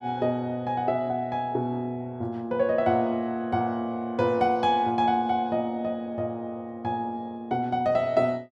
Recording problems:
none

